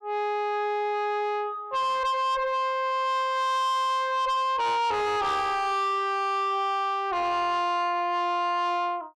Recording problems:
distortion; soft clipping, signal-to-distortion ratio 6 dB

